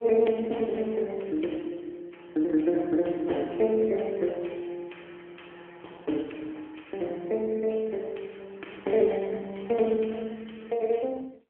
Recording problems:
phone line; 240 Hz to 3.7 kHz, AMR-NB

